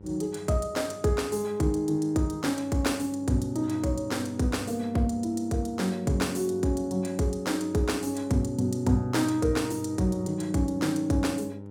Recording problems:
hum; 50 Hz, harmonics up to 1 kHz, SNR 16 dB

